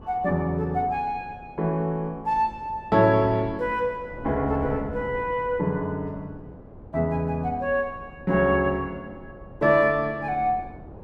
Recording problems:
wind noise; below 420 Hz, SNR 18 dB

